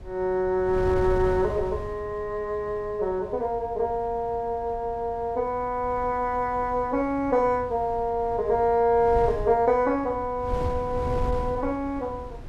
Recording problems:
wind noise; below 130 Hz, SNR 13 dB

